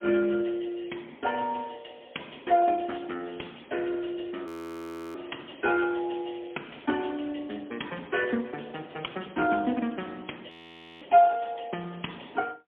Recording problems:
telephone audio; 190 Hz to 3.3 kHz, AMR-NB, then MP3
audio freezing; at 4.5 s for 0.5 s and at 11 s for 0.5 s
crackle; from 5.5 to 7.5 s; loose cable, SNR 25 dB

